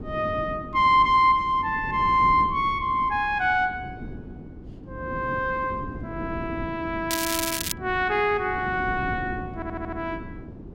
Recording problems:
wind noise; below 310 Hz, SNR 13 dB
crackle; at 7 s; loose cable, SNR 4 dB
stutter; at 9.5 s

